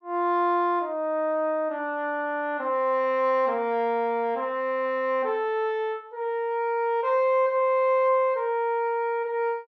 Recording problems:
low-pass filter; nothing above 6.1 kHz

